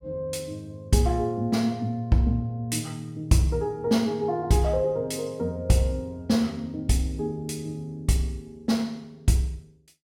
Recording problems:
none

